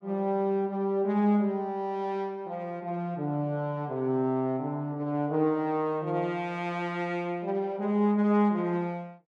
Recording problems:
none

